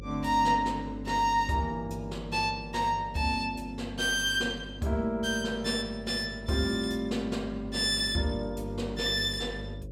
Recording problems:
hum; 50 Hz, harmonics up to 550 Hz, SNR 14 dB

